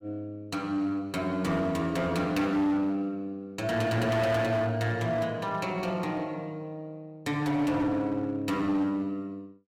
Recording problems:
distortion; hard clipping, uneven, signal-to-distortion ratio 11 dB

